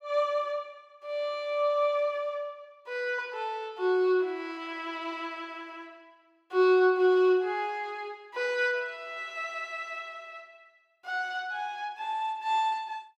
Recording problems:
none

